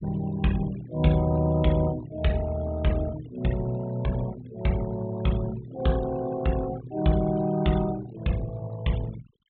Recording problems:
low-pass filter; nothing above 4 kHz
denoising artefacts; signal-to-artefact ratio 18 dB

